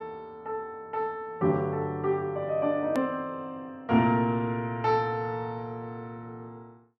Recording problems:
edit click; at 3 s

